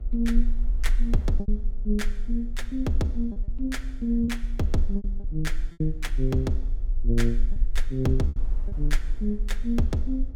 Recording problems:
hum; 60 Hz, harmonics up to 840 Hz, SNR 23 dB
rumble; below 38 Hz, strongest tone 20 Hz, SNR 2 dB
wind noise; below 470 Hz, SNR 25 dB
lost packets; 5% of the sound replaced, filled with repeated pitch periods

